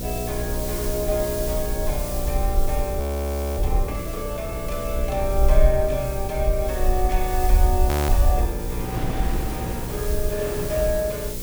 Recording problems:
electrical hum; 60 Hz, harmonics up to 540 Hz, SNR 6 dB
hiss; slope +5 dB per octave, SNR 7 dB
rumble; below 62 Hz, SNR 0 dB
wind on the microphone; below 540 Hz, SNR 11 dB
frozen audio; at 3 s for 0.5 s and at 8 s

